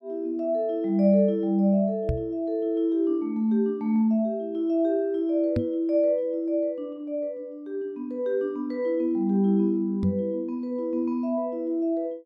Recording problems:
microphone bump; at 2 s, at 5.5 s and at 10 s; peak +3 dB vs average level

